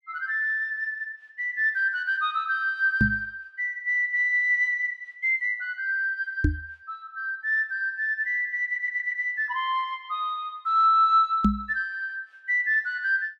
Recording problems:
microphone thump; at 3 s, at 6.5 s and at 11 s; peak +7 dB vs average level
stutter; at 8.5 s

